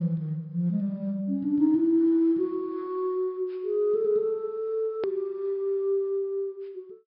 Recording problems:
treble missing; nothing above 5.5 kHz
click at an edit; at 5 s

